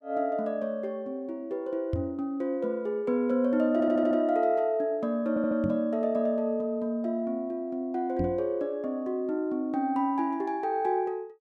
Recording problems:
microphone bump; at 2 s, at 5.5 s and at 8 s; peak +1 dB vs average level
audio stuttering; at 3.5 s and at 5.5 s

